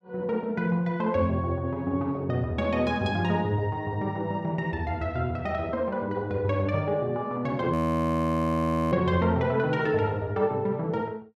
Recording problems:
frozen audio; at 7.5 s for 1 s

